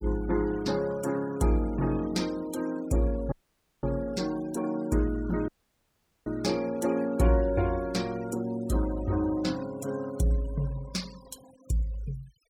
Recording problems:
denoising artefacts; signal-to-artefact ratio 19 dB
dropout; at 3.5 s for 0.5 s and at 5.5 s for 1 s

